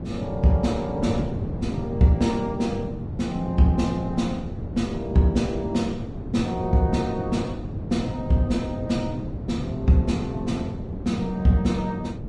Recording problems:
lossy compression; Vorbis, log-spectral distance 2 dB, nothing above 10.1 kHz
wind noise; below 260 Hz, SNR 7 dB

